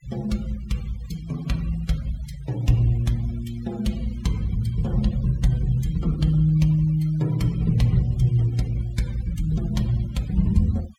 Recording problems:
noise reduction artefacts; signal-to-artefact ratio 22 dB

